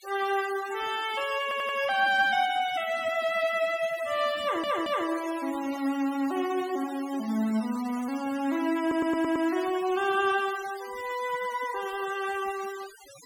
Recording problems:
denoising artefacts; signal-to-artefact ratio 16 dB
stutter; at 1.5 s, at 4.5 s and at 9 s

